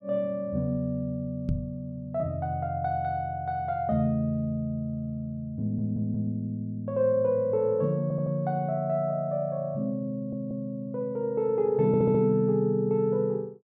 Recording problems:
microphone thump; at 1.5 s; peak +2 dB vs average level
stutter; 4 times, first at 5.5 s

